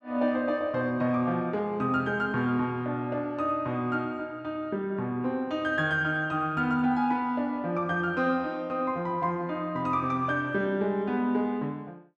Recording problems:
none

